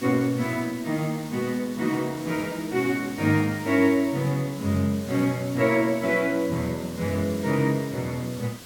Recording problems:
background hiss; slope -2 dB per octave, SNR 17 dB

